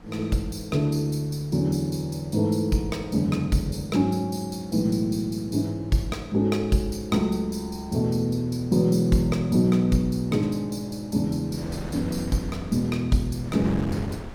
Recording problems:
wind noise; below 550 Hz, SNR 18 dB

